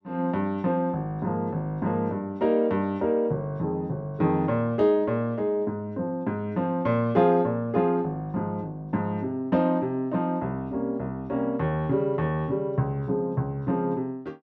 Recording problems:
none

